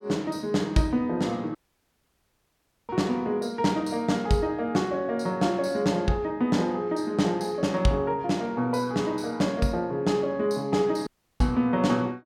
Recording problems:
dropout; at 1.5 s for 1.5 s and at 11 s

